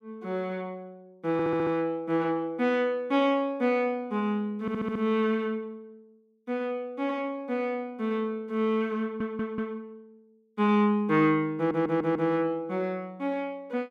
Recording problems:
stutter; 4 times, first at 1.5 s

